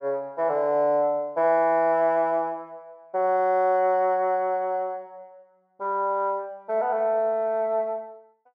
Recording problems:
none

